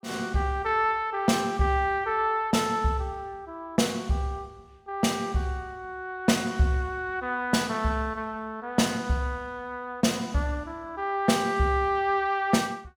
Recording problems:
none

